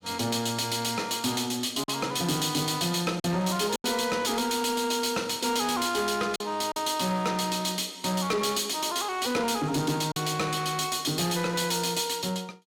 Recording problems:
distortion; soft clipping, signal-to-distortion ratio 11 dB
packet loss; 2% of the sound replaced, filled with silence

